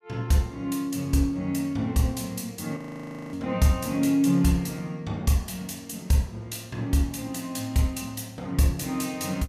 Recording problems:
audio freezing; at 3 s for 0.5 s

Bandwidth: 15 kHz